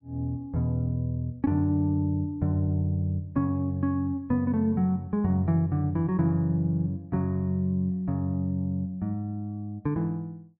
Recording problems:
none

